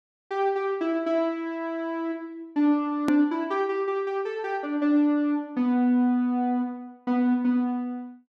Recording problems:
edit click; at 3 s

